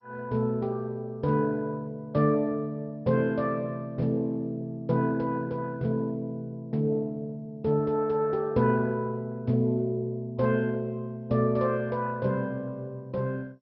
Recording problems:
lossy compression; MP2, log-spectral distance 2 dB, nothing above 5.5 kHz

